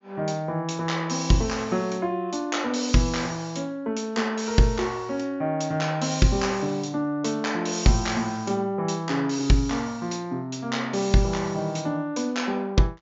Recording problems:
low-pass filter; nothing above 7.3 kHz

